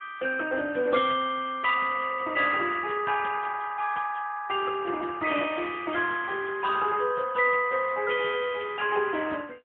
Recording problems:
telephone audio; 260 Hz to 3.4 kHz, AMR-NB, then MP3

